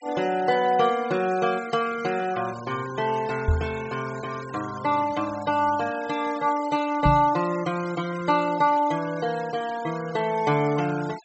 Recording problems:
treble missing; nothing above 7.8 kHz
denoising artefacts; signal-to-artefact ratio 18 dB
knock on the microphone; at 3.5 s and at 7 s; peak +5 dB vs average level

